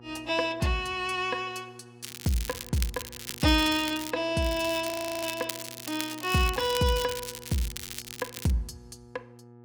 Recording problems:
hum; 60 Hz, harmonics up to 1.3 kHz, SNR 22 dB
crackling; from 2 to 4 s and from 4.5 to 8.5 s; loose cable, SNR 9 dB
frozen audio; at 5 s

